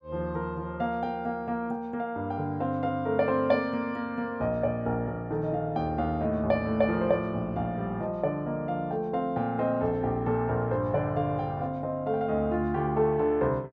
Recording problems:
none

